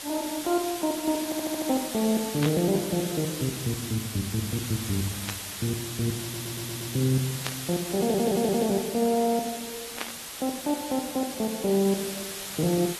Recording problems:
lossy codec; AAC, log-spectral distance 11 dB
hiss; slope 0 dB per octave, SNR 6 dB
audio stuttering; at 1.5 s, at 6 s and at 8 s
static burst; 4 times, first at 2.5 s; peak 0 dB vs average level

